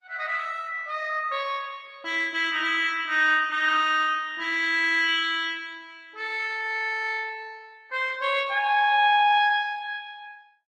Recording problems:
codec artefacts; Opus, log-spectral distance 3 dB

